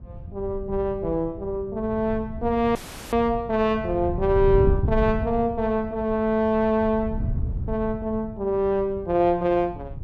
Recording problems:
wind on the microphone; below 120 Hz, SNR 9 dB
dropout; at 3 s

